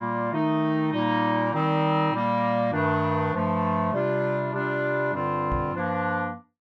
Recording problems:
microphone thump; at 5.5 s; peak -3 dB vs average level

